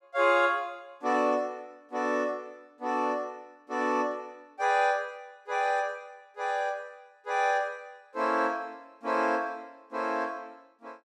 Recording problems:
none

